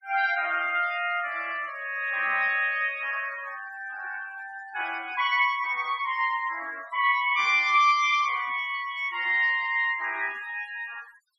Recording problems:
noise reduction artefacts; signal-to-artefact ratio 21 dB

